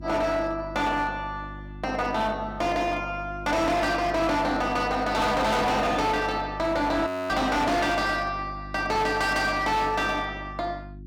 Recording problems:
distorted audio; hard clipping, signal-to-distortion ratio 8 dB
hum; 50 Hz, harmonics up to 350 Hz, SNR 15 dB
audio freezing; at 7 s

